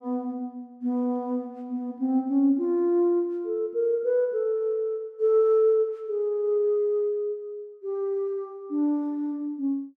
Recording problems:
none

